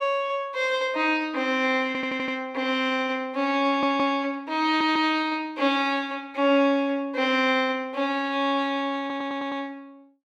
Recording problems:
audio stuttering; 4 times, first at 2 s

